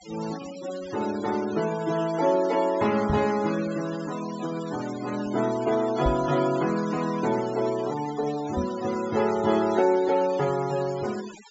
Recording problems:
treble missing; nothing above 8 kHz
denoising artefacts; signal-to-artefact ratio 15 dB
microphone bump; at 3 s, at 6 s and at 8.5 s; peak +1 dB vs average level

